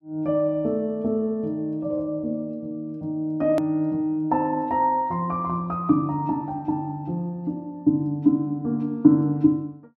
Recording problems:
click at an edit; at 3.5 s

